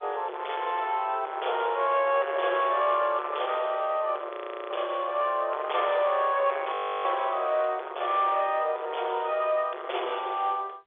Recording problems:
telephone audio; 340 Hz to 3.7 kHz, G.711
distorted audio; soft clipping, signal-to-distortion ratio 11 dB
frozen audio; at 4.5 s and at 6.5 s

